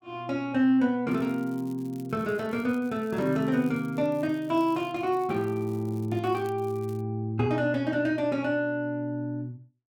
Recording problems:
crackle; from 1 to 4 s and from 4 to 7 s; loose cable, SNR 28 dB

